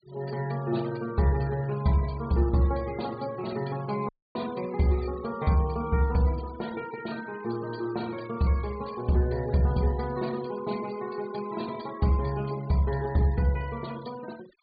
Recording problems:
treble missing; nothing above 4.7 kHz
noise reduction artefacts; signal-to-artefact ratio 20 dB
dropout; at 4 s

